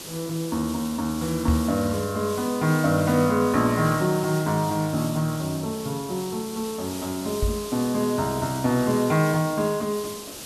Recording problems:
hiss; SNR 12 dB
microphone bump; at 1.5 s and at 7.5 s; peak +3 dB vs average level

